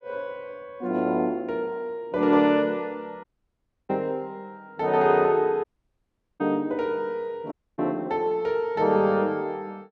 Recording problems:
dropout; at 3 s for 0.5 s, at 5.5 s for 1 s and at 7.5 s

